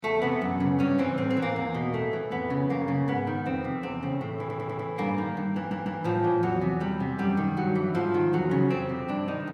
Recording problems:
stutter; at 4.5 s and at 5.5 s

